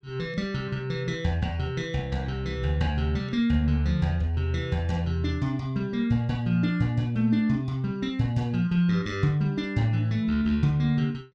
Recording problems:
none

